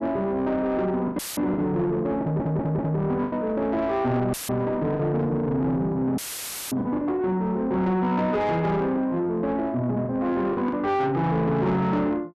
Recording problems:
distorted audio; soft clipping, signal-to-distortion ratio 11 dB
packet loss; 4% of the sound replaced, filled with the last packet
audio cutting out; at 1 s, at 4.5 s and at 6 s for 0.5 s; filled with static
stutter; at 2 s

